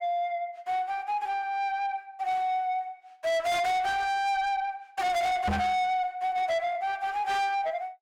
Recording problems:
distorted audio; soft clipping, signal-to-distortion ratio 6 dB
microphone thump; at 5.5 s; peak +3 dB vs average level

